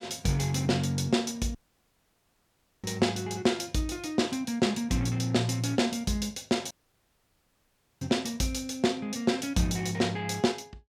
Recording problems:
dropout; at 1.5 s for 1.5 s and at 6.5 s for 1.5 s

